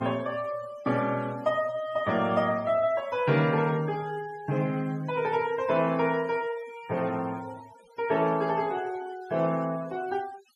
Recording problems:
denoising artefacts; signal-to-artefact ratio 21 dB

